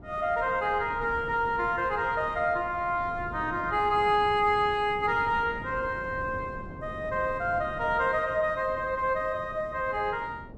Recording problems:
wind noise; below 370 Hz, SNR 16 dB

